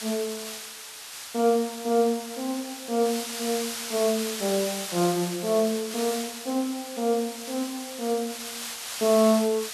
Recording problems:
hiss; slope +2 dB per octave, SNR 7 dB

